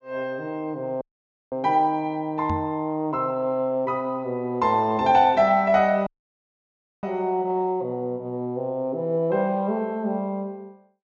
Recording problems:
treble cut off; nothing above 8 kHz
audio cutting out; at 1 s for 0.5 s and at 6 s for 1 s
microphone thump; at 2.5 s; peak -2 dB vs average level

